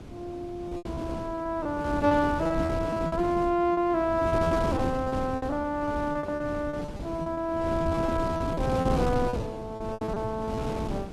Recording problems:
wind noise; below 390 Hz, SNR 6 dB
lost packets; 18% of the sound replaced, filled with repeated pitch periods

